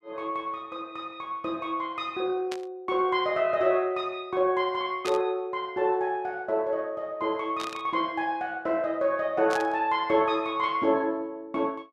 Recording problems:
static burst; 4 times, first at 2.5 s; peak -3 dB vs average level

